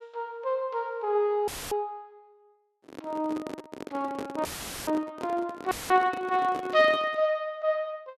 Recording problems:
audio cutting out; at 1.5 s, at 4.5 s and at 5.5 s; filled with static
handling noise; from 3 to 7.5 s; peak -4 dB vs average level

